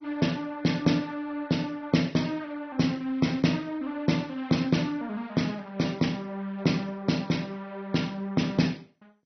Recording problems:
lossy compression; MP2, log-spectral distance 3 dB, nothing above 6 kHz

